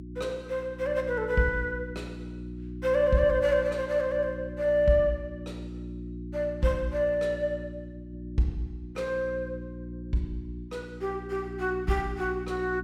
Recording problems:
electrical hum; 60 Hz, harmonics up to 360 Hz, SNR 11 dB

